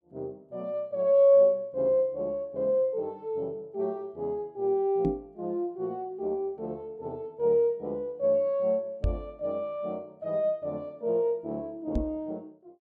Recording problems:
microphone bump; at 5 s, at 9 s and at 12 s; peak +3 dB vs average level

